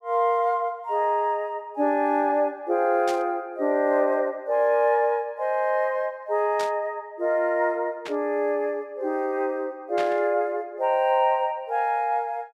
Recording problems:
burst of static; 4 times, first at 3 s; peak -7 dB vs average level

